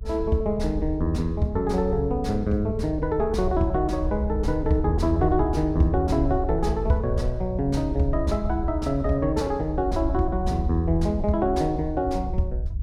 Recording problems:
rumble; below 68 Hz, SNR 6 dB

